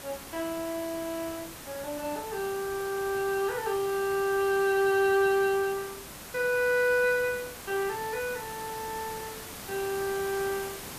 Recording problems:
hiss; slope -3 dB per octave, SNR 12 dB

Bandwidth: 14.5 kHz